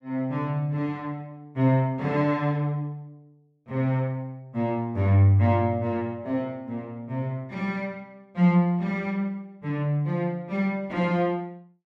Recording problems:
none

